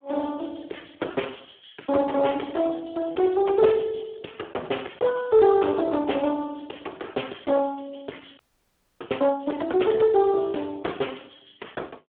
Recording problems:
phone line; 280 Hz to 3.4 kHz, Speex
distortion; hard clipping, uneven, signal-to-distortion ratio 10 dB
frozen audio; at 8.5 s for 0.5 s

